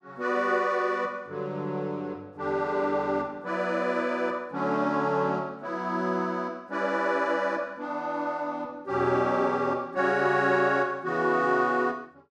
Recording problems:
none

